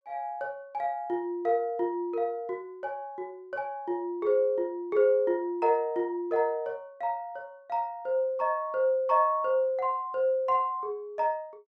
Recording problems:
none

